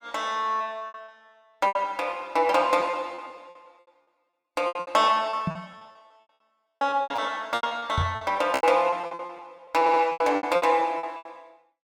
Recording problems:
packet loss; 19% of the sound replaced, filled with repeated pitch periods
microphone bump; at 5.5 s and at 8 s; peak +1 dB vs average level
stutter; at 10 s

